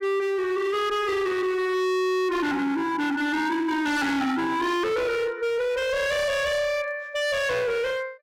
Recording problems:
distorted audio; hard clipping, signal-to-distortion ratio 6 dB

